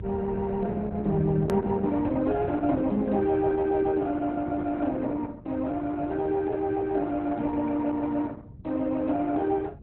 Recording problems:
lossy codec; Opus, log-spectral distance 3 dB, nothing above 13.1 kHz
rumble; below 160 Hz, SNR 13 dB
edit click; at 1.5 s

